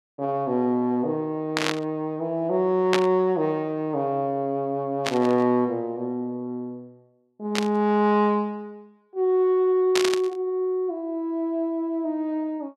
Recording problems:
burst of static; 5 times, first at 1.5 s; peak +5 dB vs average level

